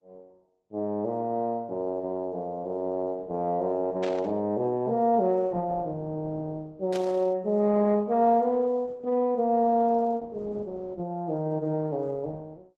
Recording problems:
lossy compression; Opus, log-spectral distance 2 dB
burst of static; at 4 s and at 7 s; peak -8 dB vs average level

